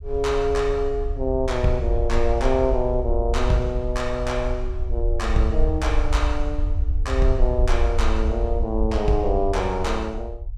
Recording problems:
low-frequency rumble; below 60 Hz, SNR 2 dB

